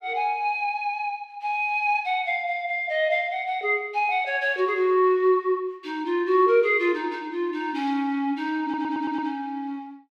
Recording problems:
audio stuttering; at 8.5 s

